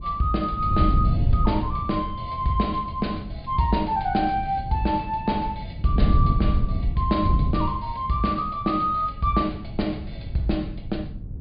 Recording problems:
low-pass filter; nothing above 4.8 kHz
wind on the microphone; below 120 Hz, SNR 3 dB

